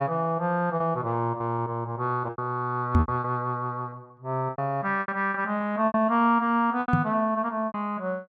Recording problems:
lost packets; 10% of the sound replaced, filled with repeated pitch periods
knock on the microphone; at 3 s and at 7 s; peak +8 dB vs average level

